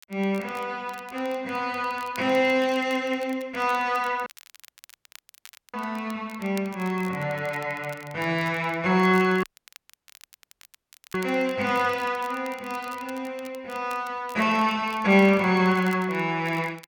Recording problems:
crackling; vinyl, SNR 23 dB
audio cutting out; at 4.5 s for 1.5 s and at 9.5 s for 1.5 s

